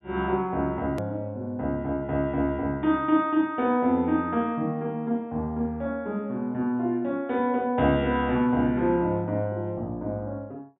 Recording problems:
low-pass filter; nothing above 4 kHz
hard cut with a click; at 1 s

